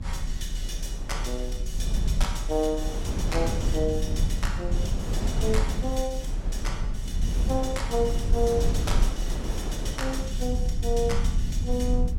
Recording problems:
low-frequency rumble; below 66 Hz, strongest tone 32 Hz, SNR -1 dB
wind on the microphone; below 610 Hz, SNR 7 dB

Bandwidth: 16.5 kHz